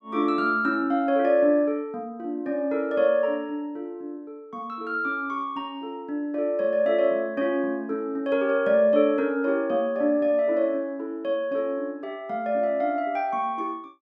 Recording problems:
none

